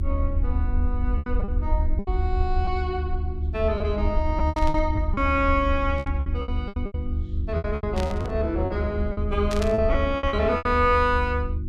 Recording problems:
electrical hum; 50 Hz, harmonics up to 400 Hz, SNR 11 dB
low-frequency rumble; below 74 Hz, SNR 2 dB
lost packets; 12% of the sound replaced, filled with repeated pitch periods
burst of static; 4 times, first at 4.5 s; peak -3 dB vs average level

